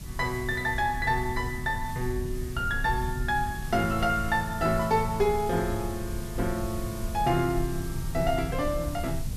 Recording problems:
hiss; SNR 16 dB
low-frequency rumble; below 100 Hz, SNR 8 dB

